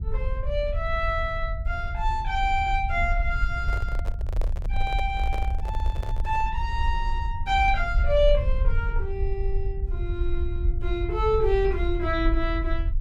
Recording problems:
rumble; below 60 Hz, SNR 2 dB
microphone handling noise; from 3.5 to 6.5 s; peak -6 dB vs average level

